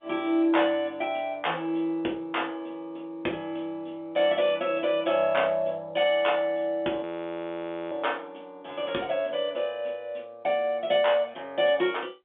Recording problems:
phone line; 240 Hz to 3.6 kHz, G.711
audio freezing; at 7 s for 1 s

